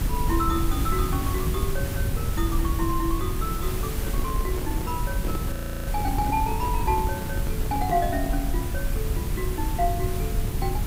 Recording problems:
hiss; slope -3 dB per octave, SNR 6 dB
low-frequency rumble; below 100 Hz, SNR -1 dB
handling noise; from 4 to 8.5 s; peak -1 dB vs average level
audio freezing; at 5.5 s

